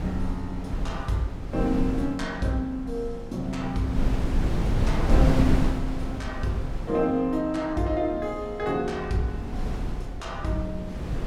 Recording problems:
wind on the microphone; below 170 Hz, SNR 1 dB

